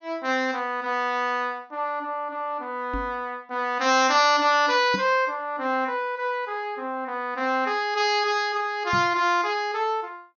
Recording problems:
treble cut off; nothing above 6.6 kHz
microphone bump; at 3 s, at 5 s and at 9 s; peak -4 dB vs average level

